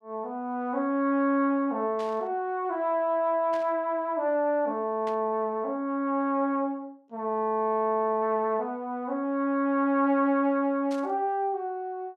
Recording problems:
static burst; 4 times, first at 2 s; peak -14 dB vs average level

